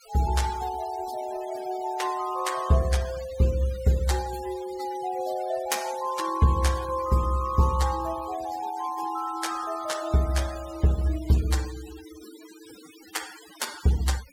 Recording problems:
noise reduction artefacts; signal-to-artefact ratio 16 dB

